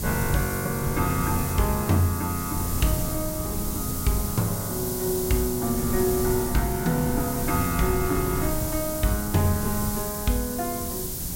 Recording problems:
hiss; SNR 5 dB
wind noise; below 180 Hz, SNR 7 dB

